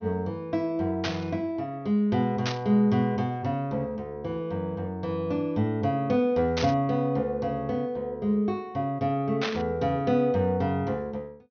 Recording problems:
treble cut off; nothing above 6.3 kHz
burst of static; 4 times, first at 1 s; peak +1 dB vs average level

